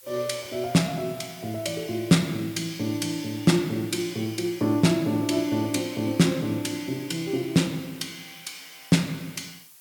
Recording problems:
background hiss; slope +2 dB per octave, SNR 21 dB

